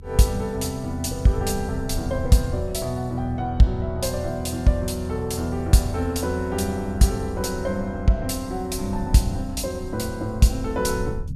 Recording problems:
rumble; below 90 Hz, SNR 13 dB

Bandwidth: 14.5 kHz